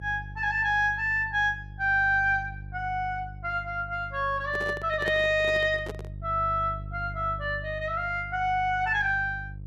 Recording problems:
hum; 50 Hz, harmonics up to 350 Hz, SNR 14 dB
handling noise; from 4.5 to 6 s; peak -3 dB vs average level

